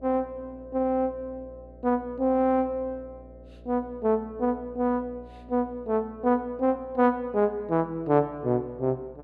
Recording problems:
hum; 60 Hz, harmonics up to 660 Hz, SNR 23 dB

